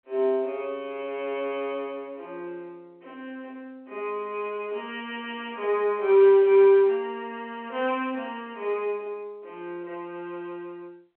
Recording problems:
telephone audio; 300 Hz to 3.3 kHz, G.711

